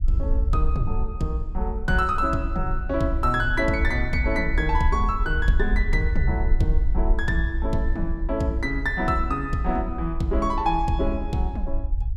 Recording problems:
low-frequency rumble; below 58 Hz, SNR 3 dB

